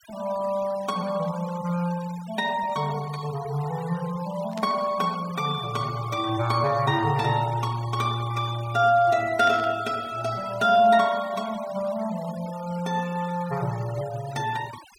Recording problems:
denoising artefacts; signal-to-artefact ratio 18 dB
burst of static; at 4.5 s and at 9.5 s; peak -8 dB vs average level

